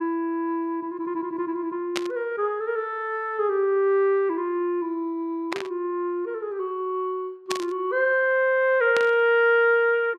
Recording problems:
burst of static; 4 times, first at 2 s; peak 0 dB vs average level

